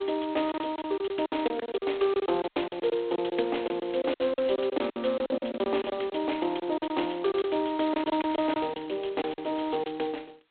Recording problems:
telephone audio; 320 Hz to 3.6 kHz, G.726
lost packets; 14% of the sound replaced, filled with silence

